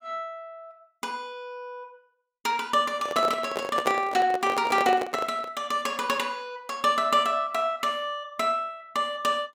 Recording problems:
handling noise; from 3 to 5.5 s; peak +1 dB vs average level

